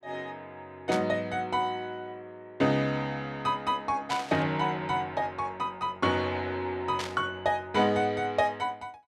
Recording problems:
burst of static; at 1 s, at 4 s and at 7 s; peak -1 dB vs average level

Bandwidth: 12.5 kHz